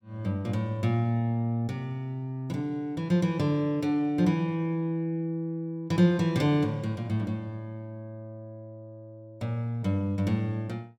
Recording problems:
none

